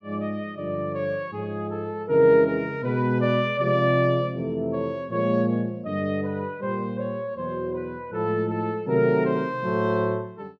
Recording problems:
none

